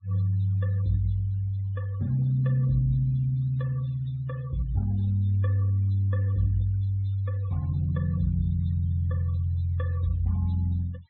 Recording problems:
treble missing; nothing above 4 kHz
noise reduction artefacts; signal-to-artefact ratio 27 dB

